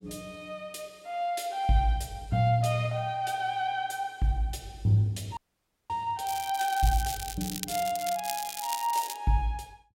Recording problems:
audio freezing; at 5.5 s for 0.5 s
crackling; from 6.5 to 9 s; loose cable, SNR 8 dB

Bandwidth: 16 kHz